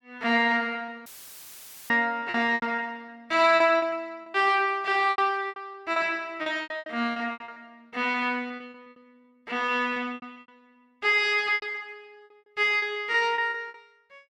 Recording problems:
packet loss; 14% of the sound replaced, filled with repeated pitch periods
audio cutting out; at 1 s for 1 s; filled with static

